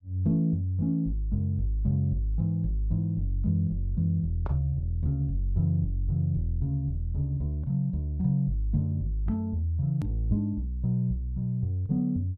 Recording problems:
click at an edit; at 10 s

